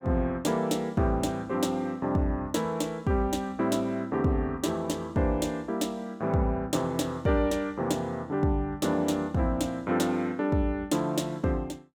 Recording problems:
none

